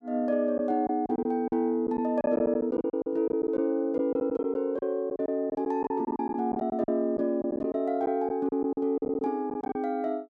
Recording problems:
packet loss; 12% of the sound replaced, filled with silence

